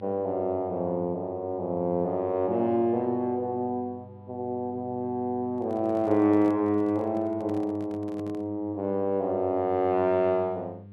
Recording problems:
electrical hum; 50 Hz, harmonics up to 700 Hz, SNR 19 dB
handling noise; from 5.5 to 8.5 s; peak -13 dB vs average level

